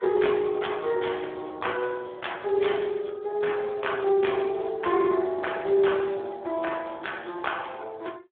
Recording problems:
phone line; 280 Hz to 3.5 kHz, Speex

